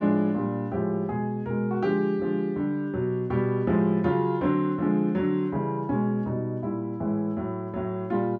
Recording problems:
none

